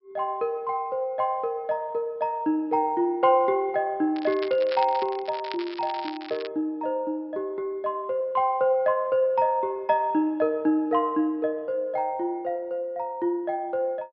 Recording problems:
low-pass filter; nothing above 5.3 kHz
crackle; from 4 to 6.5 s; loose cable, SNR 15 dB

